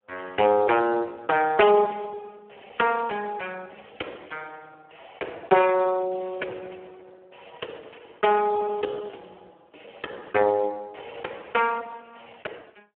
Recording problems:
telephone audio; 300 Hz to 3.2 kHz, Speex

